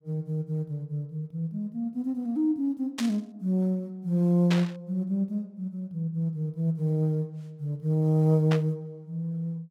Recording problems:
static burst; at 3 s, at 4.5 s and at 8.5 s; peak 0 dB vs average level

